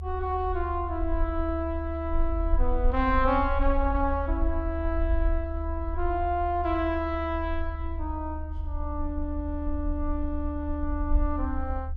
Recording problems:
rumble; below 74 Hz, SNR 2 dB

